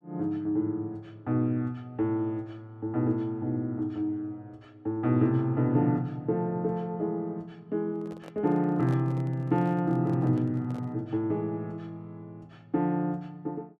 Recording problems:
microphone handling noise; from 8 to 11 s; peak -10 dB vs average level

